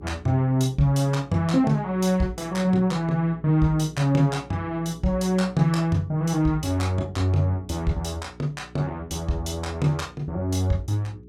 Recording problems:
electrical hum; 60 Hz, harmonics up to 420 Hz, SNR 22 dB

